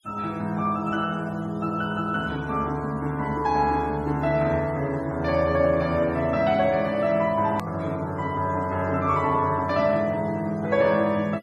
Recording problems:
noise reduction artefacts; signal-to-artefact ratio 26 dB
click at an edit; at 7.5 s

